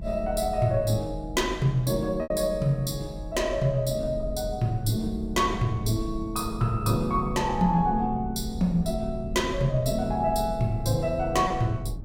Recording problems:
low-frequency rumble; below 98 Hz, SNR 11 dB
packet loss; 0.8% of the sound replaced, filled with repeated pitch periods

